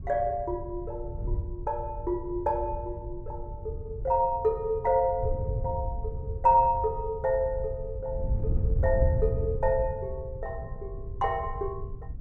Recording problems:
wind noise; below 96 Hz, SNR 6 dB

